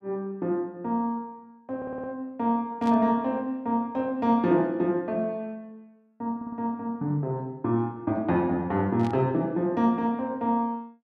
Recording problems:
audio stuttering; at 2 s and at 6.5 s
burst of static; at 3 s and at 9 s; peak -13 dB vs average level

